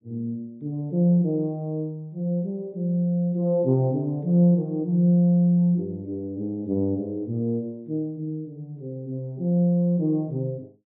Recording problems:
treble missing; nothing above 4 kHz

